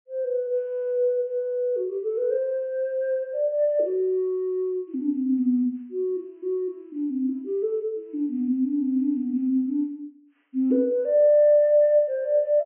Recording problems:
treble cut off; nothing above 3 kHz

